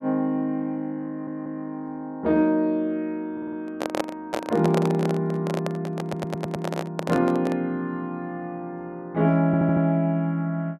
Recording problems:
stutter; 4 times, first at 1 s
microphone handling noise; from 3.5 to 7.5 s; peak +3 dB vs average level

